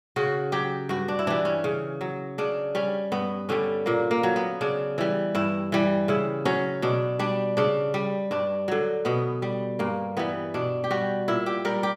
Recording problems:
none

